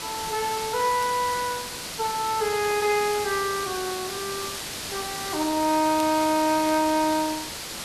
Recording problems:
hiss; slope -1 dB per octave, SNR 7 dB
crackle; vinyl, SNR 25 dB

